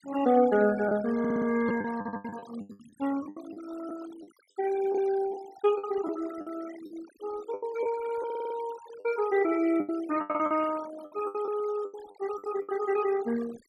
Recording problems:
noise reduction artefacts; signal-to-artefact ratio 17 dB
lost packets; 12% of the sound replaced, filled with the last packet
stutter; at 1 s, at 2 s and at 8.5 s

